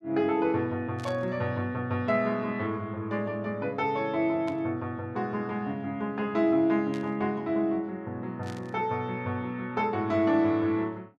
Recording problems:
burst of static; 4 times, first at 1 s; peak -11 dB vs average level

